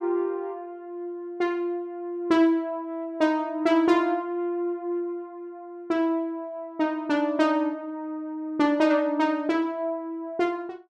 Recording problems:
none

